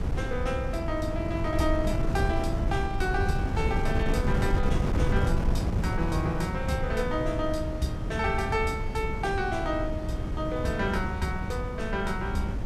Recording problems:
wind noise; below 160 Hz, SNR 0 dB

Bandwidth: 14.5 kHz